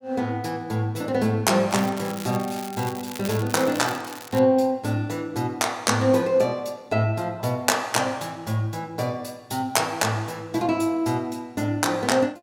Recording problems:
crackling; from 1.5 to 4.5 s; loose cable, SNR 14 dB

